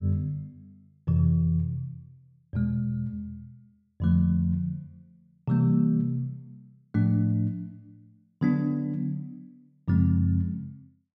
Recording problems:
none

